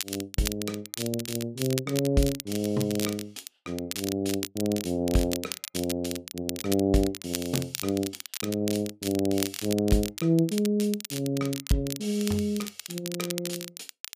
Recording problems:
crackling; vinyl, SNR 7 dB

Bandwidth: 15 kHz